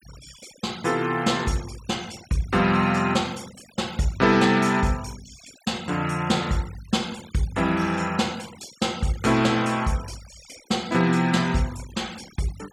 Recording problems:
noise reduction artefacts; signal-to-artefact ratio 20 dB

